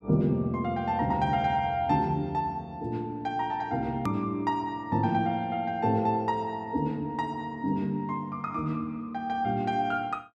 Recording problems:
hard cut with a click; at 4 s

